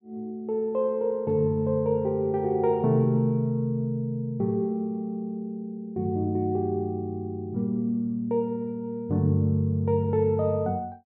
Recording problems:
none

